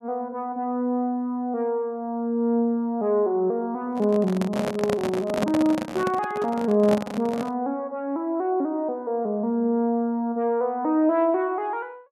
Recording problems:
microphone handling noise; from 4 to 7.5 s; peak +3 dB vs average level

